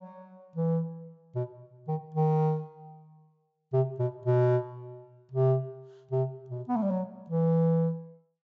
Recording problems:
treble missing; nothing above 8 kHz

